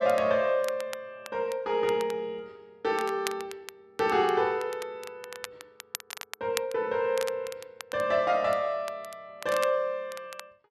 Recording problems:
crackling; vinyl, SNR 14 dB

